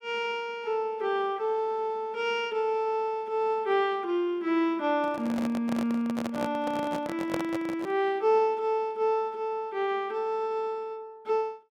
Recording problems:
handling noise; from 5 to 8 s; peak +1 dB vs average level

